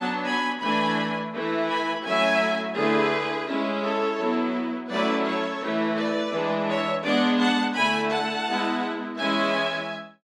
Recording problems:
none

